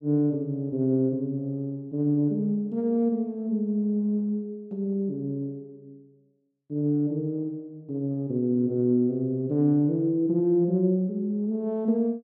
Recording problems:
none

